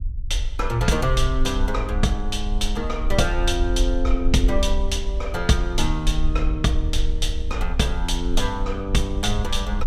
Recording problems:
rumble; below 50 Hz, SNR 2 dB

